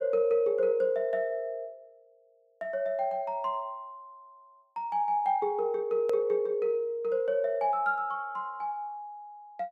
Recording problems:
edit click; at 6 s

